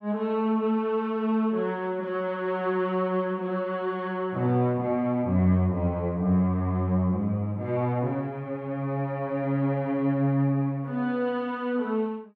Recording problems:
none

